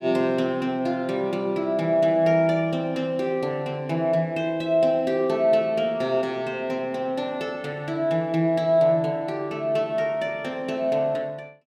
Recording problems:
none

